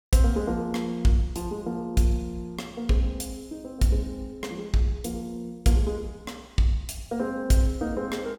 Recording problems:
none

